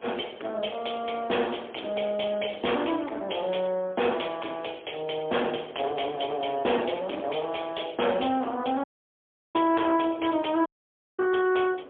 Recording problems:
telephone audio; 260 Hz to 3.4 kHz, AMR-NB, then MP3
distorted audio; soft clipping, signal-to-distortion ratio 11 dB
wind noise; below 760 Hz, SNR 19 dB
audio cutting out; at 9 s for 0.5 s and at 11 s for 0.5 s

